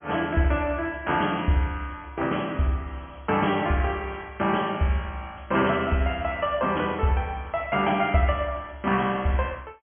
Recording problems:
low-pass filter; nothing above 3.3 kHz
lossy compression; MP2, log-spectral distance 4 dB

